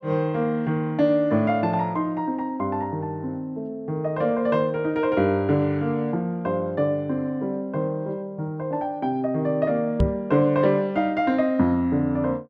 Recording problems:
microphone thump; at 10 s; peak +6 dB vs average level

